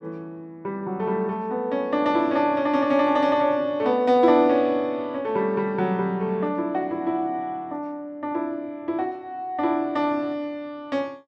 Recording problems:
none

